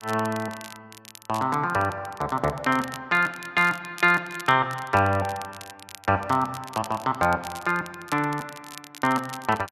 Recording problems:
crackle; vinyl, SNR 18 dB

